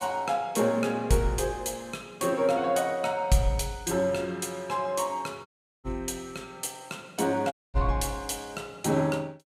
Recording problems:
audio cutting out; at 5.5 s and at 7.5 s

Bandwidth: 15.5 kHz